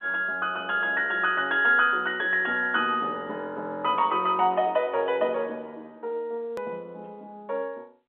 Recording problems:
phone line; 280 Hz to 3.7 kHz, G.711
hard cut with a click; at 6.5 s

